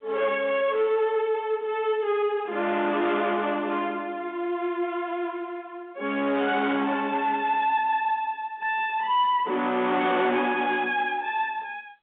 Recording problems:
phone line; 240 Hz to 3.6 kHz, G.711
distorted audio; soft clipping, signal-to-distortion ratio 11 dB

